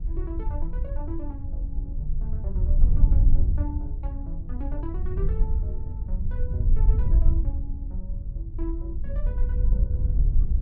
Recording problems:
wind noise; below 60 Hz, SNR -12 dB

